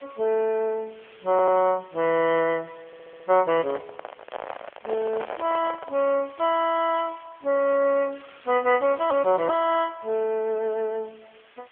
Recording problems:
telephone audio; 280 Hz to 3.3 kHz, AMR-NB
hiss; SNR 27 dB
audio stuttering; at 1.5 s and at 3 s
handling noise; from 3.5 to 6 s; peak -5 dB vs average level

